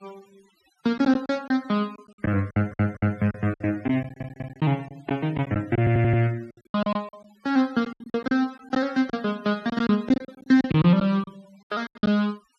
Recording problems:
denoising artefacts; signal-to-artefact ratio 26 dB
lost packets; 13% of the sound replaced, filled with silence
audio stuttering; at 2.5 s, at 4 s and at 6 s

